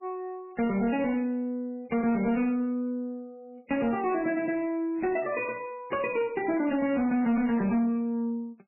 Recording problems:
lossy codec; MP3, log-spectral distance 2 dB, nothing above 2.5 kHz
distortion; soft clipping, signal-to-distortion ratio 11 dB

